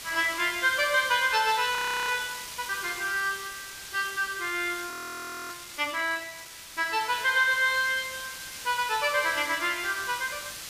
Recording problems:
background hiss; slope +2 dB per octave, SNR 11 dB
audio freezing; at 2 s and at 5 s for 0.5 s

